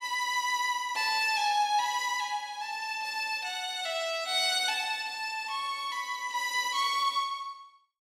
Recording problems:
none

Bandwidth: 16 kHz